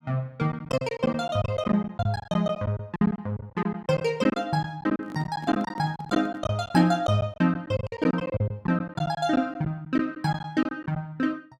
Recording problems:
packet loss; 13% of the sound replaced, filled with silence
handling noise; from 5 to 6.5 s; peak -9 dB vs average level

